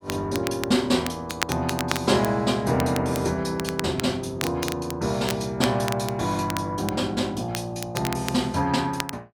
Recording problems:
crackle; vinyl, SNR 9 dB

